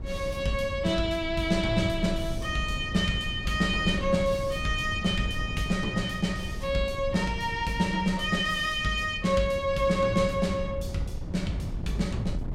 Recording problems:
wind on the microphone; below 140 Hz, SNR 9 dB

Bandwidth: 16.5 kHz